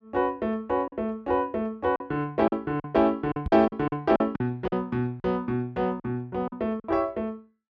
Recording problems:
lost packets; 8% of the sound replaced, filled with silence
microphone thump; at 3.5 s; peak 0 dB vs average level

